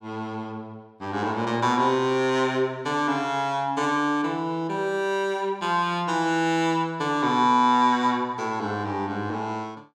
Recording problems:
none

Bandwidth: 16.5 kHz